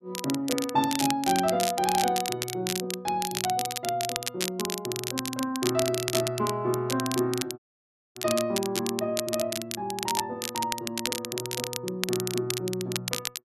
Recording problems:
crackling; vinyl, SNR 3 dB
dropout; at 7.5 s for 0.5 s

